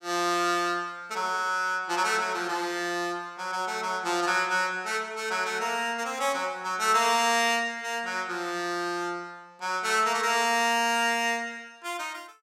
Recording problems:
none

